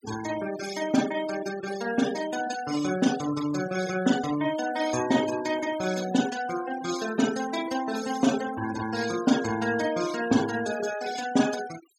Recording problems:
denoising artefacts; signal-to-artefact ratio 11 dB

